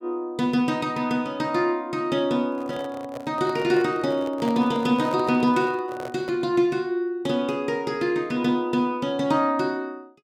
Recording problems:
handling noise; from 2.5 to 6.5 s; peak -7 dB vs average level

